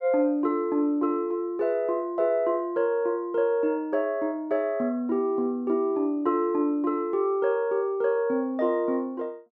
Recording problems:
none

